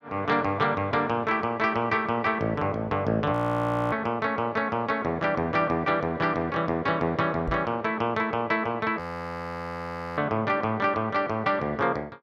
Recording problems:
frozen audio; at 3.5 s for 0.5 s and at 9 s for 1 s
microphone thump; at 7.5 s; peak -2 dB vs average level

